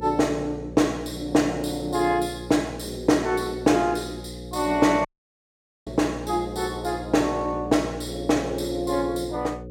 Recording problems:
hum; 60 Hz, harmonics up to 540 Hz, SNR 13 dB
audio cutting out; at 5 s for 1 s

